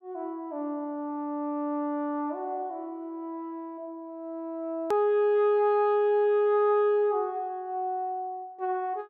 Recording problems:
hard cut with a click; at 5 s

